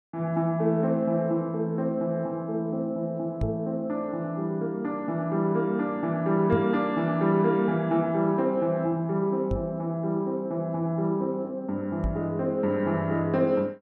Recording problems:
microphone thump; 4 times, first at 3.5 s; peak +1 dB vs average level

